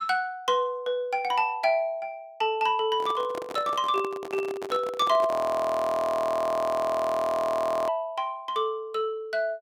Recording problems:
handling noise; from 3 to 5.5 s; peak -6 dB vs average level
audio freezing; at 5.5 s for 2.5 s

